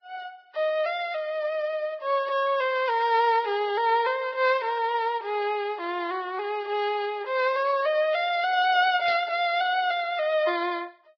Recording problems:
lossy compression; Vorbis, log-spectral distance 3 dB
burst of static; at 9 s; peak -7 dB vs average level

